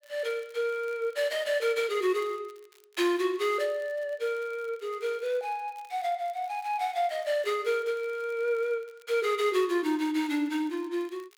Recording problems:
crackle; vinyl, SNR 29 dB

